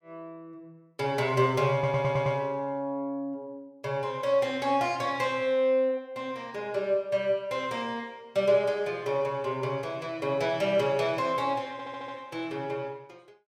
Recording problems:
stutter; at 1.5 s and at 12 s

